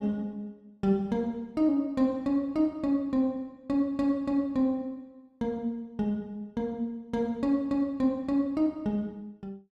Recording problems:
none

